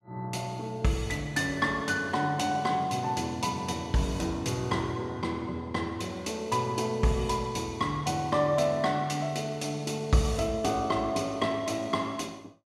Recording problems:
none

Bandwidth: 14.5 kHz